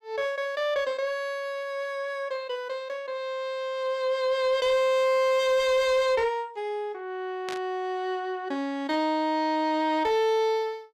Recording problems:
distorted audio; soft clipping, signal-to-distortion ratio 11 dB
burst of static; at 7.5 s; peak -6 dB vs average level

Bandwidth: 15 kHz